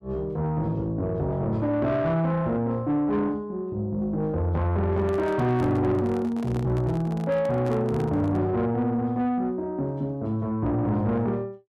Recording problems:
distortion; soft clipping, signal-to-distortion ratio 11 dB
handling noise; from 5 to 8.5 s; peak -7 dB vs average level

